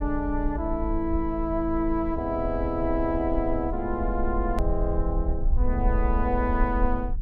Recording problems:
low-frequency rumble; below 56 Hz, SNR 3 dB
edit click; at 4.5 s

